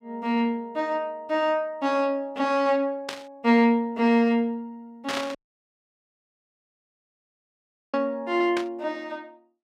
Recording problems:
static burst; at 3 s, at 5 s and at 8.5 s; peak -2 dB vs average level
audio cutting out; at 5.5 s for 2.5 s

